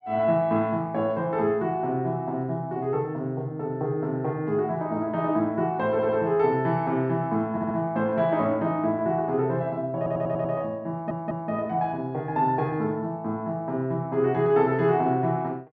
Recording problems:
stutter; 4 times, first at 6 s

